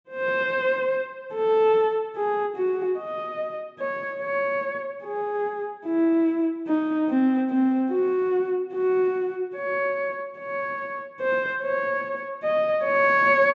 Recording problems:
treble missing; nothing above 8 kHz

